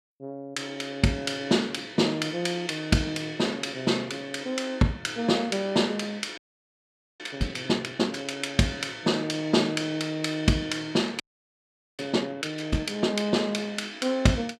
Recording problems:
audio freezing; at 6.5 s for 1 s and at 11 s for 1 s

